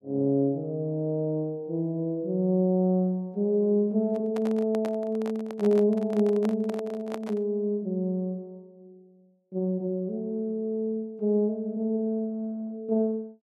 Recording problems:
handling noise; from 4 to 7.5 s; peak -6 dB vs average level

